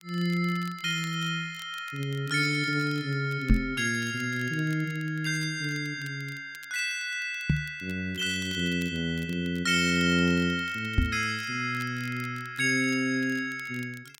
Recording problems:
crackle; vinyl, SNR 23 dB
microphone bump; at 3.5 s, at 7.5 s and at 11 s; peak +9 dB vs average level

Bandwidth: 16 kHz